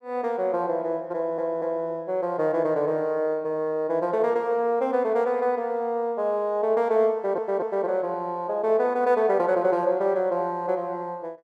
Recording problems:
stutter; at 1 s and at 7 s

